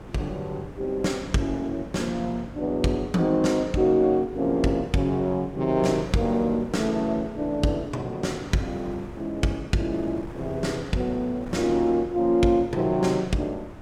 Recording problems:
hum; 50 Hz, harmonics up to 500 Hz, SNR 22 dB
wind on the microphone; below 580 Hz, SNR 17 dB

